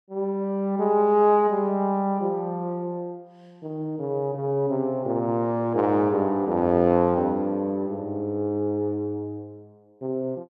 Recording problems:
none

